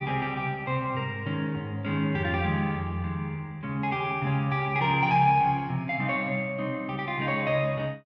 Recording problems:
none

